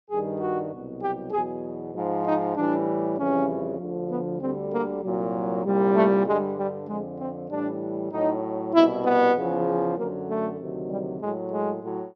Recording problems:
none

